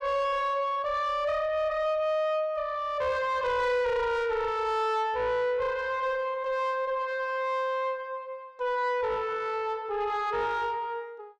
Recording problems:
distortion; soft clipping, signal-to-distortion ratio 10 dB

